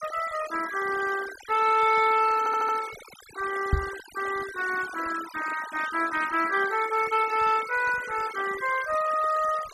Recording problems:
denoising artefacts; signal-to-artefact ratio 14 dB
audio stuttering; at 2.5 s
microphone thump; at 3.5 s; peak +5 dB vs average level

